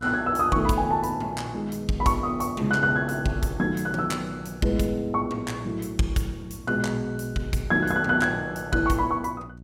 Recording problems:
hum; 60 Hz, harmonics up to 660 Hz, SNR 19 dB

